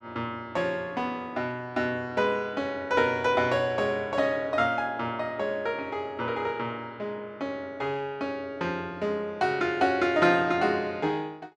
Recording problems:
none

